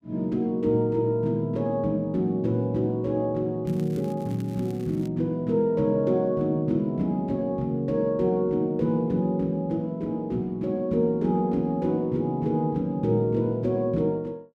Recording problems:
crackle; from 3.5 to 5 s; loose cable, SNR 27 dB

